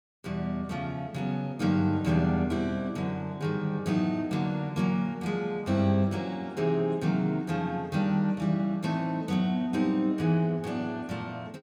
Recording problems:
none

